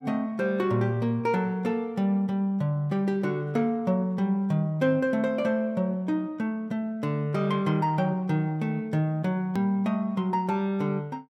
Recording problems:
click at an edit; at 9.5 s

